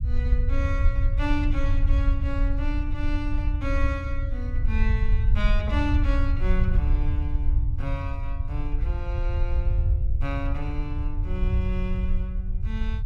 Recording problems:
low-frequency rumble; below 72 Hz, SNR -7 dB

